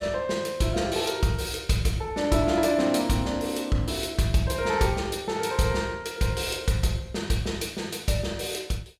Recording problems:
none

